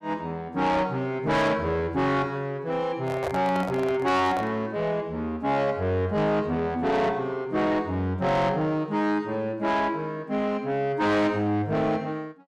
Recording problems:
distortion; soft clipping, signal-to-distortion ratio 8 dB
handling noise; from 3 to 4.5 s; peak -1 dB vs average level

